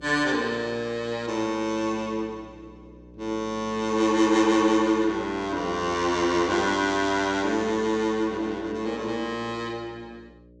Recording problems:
electrical hum; 60 Hz, harmonics up to 600 Hz, SNR 23 dB

